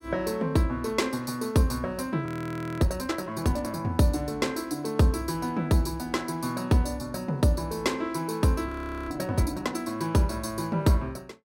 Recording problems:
frozen audio; at 2.5 s for 0.5 s and at 8.5 s

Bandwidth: 16 kHz